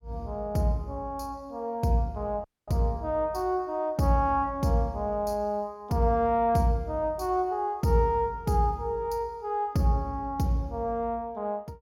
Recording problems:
audio cutting out; at 2.5 s

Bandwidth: 17.5 kHz